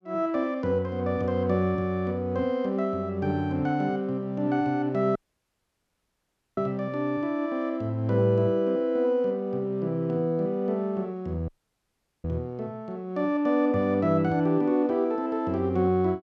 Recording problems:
audio cutting out; at 5 s for 1.5 s and at 11 s for 1 s

